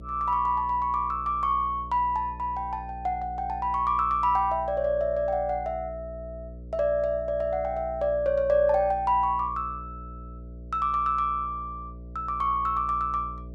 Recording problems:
hum; 60 Hz, harmonics up to 660 Hz, SNR 16 dB

